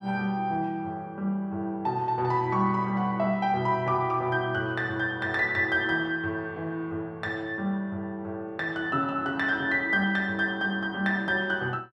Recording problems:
none

